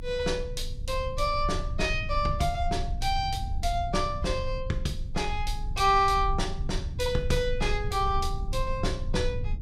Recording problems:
low-frequency rumble; below 74 Hz, strongest tone 24 Hz, SNR 6 dB

